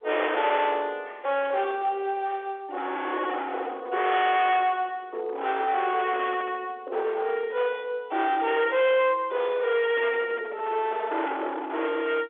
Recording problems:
phone line; 340 Hz to 3.5 kHz, G.711
distorted audio; hard clipping, signal-to-distortion ratio 8 dB

